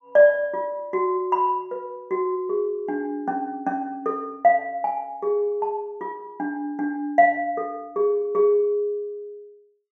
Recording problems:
none

